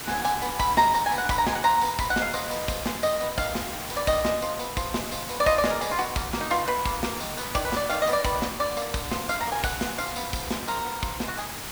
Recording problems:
hiss; slope -2 dB per octave, SNR 7 dB

